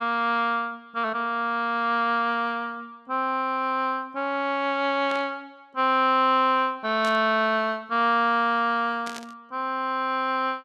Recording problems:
static burst; at 5 s, at 7 s and at 9 s; peak -9 dB vs average level

